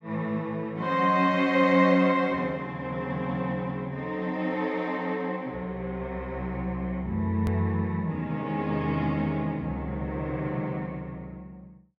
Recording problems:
click at an edit; at 7.5 s

